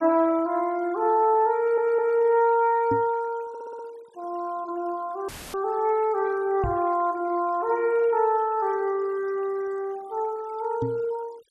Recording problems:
denoising artefacts; signal-to-artefact ratio 26 dB
stutter; at 1.5 s and at 3.5 s
knock on the microphone; at 3 s, at 6.5 s and at 11 s; peak -2 dB vs average level
dropout; at 5.5 s; filled with static

